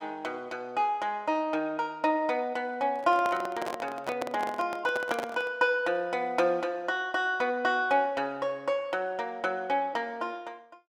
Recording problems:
handling noise; from 3 to 5.5 s; peak -1 dB vs average level

